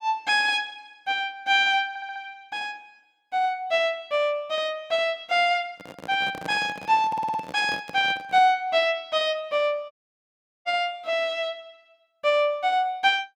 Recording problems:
audio stuttering; at 2 s and at 7 s
handling noise; from 6 to 8.5 s; peak -7 dB vs average level
audio cutting out; at 10 s for 0.5 s

